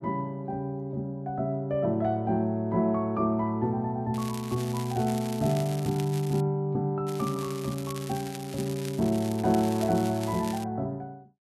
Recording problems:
crackling; from 4 to 6.5 s and from 7 to 11 s; loose cable, SNR 14 dB

